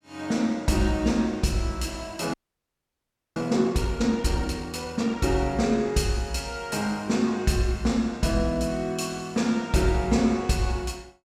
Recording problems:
audio freezing; at 2.5 s for 1 s

